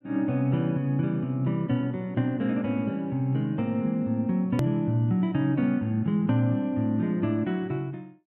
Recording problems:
click at an edit; at 4.5 s

